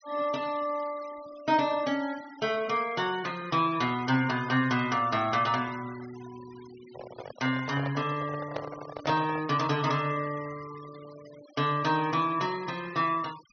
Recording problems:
treble cut off; nothing above 6.3 kHz
noise reduction artefacts; signal-to-artefact ratio 19 dB
microphone handling noise; from 7 to 9.5 s; peak -1 dB vs average level

